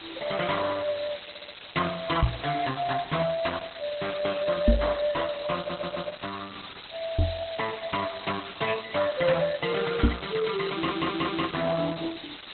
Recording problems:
codec artefacts; Opus, log-spectral distance 19 dB, nothing above 3.9 kHz
hiss; SNR 12 dB
audio stuttering; at 1.5 s, at 5.5 s and at 11 s
microphone bump; 4 times, first at 2 s; peak +10 dB vs average level

